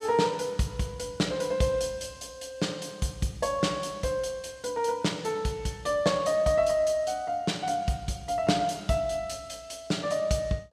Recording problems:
none

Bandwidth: 14 kHz